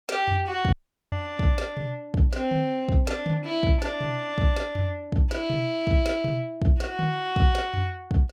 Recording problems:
audio cutting out; at 0.5 s

